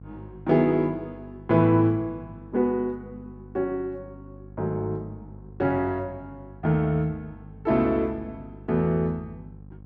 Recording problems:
hum; 50 Hz, harmonics up to 550 Hz, SNR 20 dB

